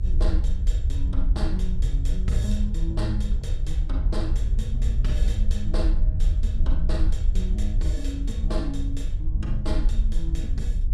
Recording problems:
low-frequency rumble; below 54 Hz, SNR -6 dB
wind on the microphone; below 170 Hz, SNR 12 dB

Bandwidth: 15 kHz